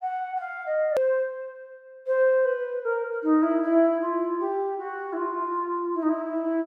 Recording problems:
hard cut with a click; at 1 s

